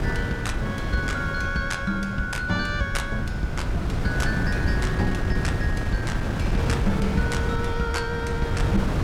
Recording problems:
hum; 50 Hz, harmonics up to 450 Hz, SNR 16 dB
rumble; below 110 Hz, SNR 8 dB
wind on the microphone; below 260 Hz, SNR 0 dB

